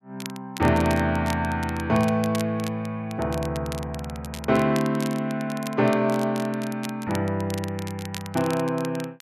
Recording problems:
crackling; vinyl, SNR 15 dB

